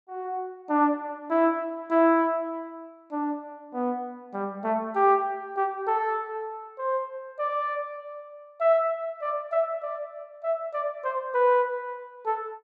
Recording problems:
none

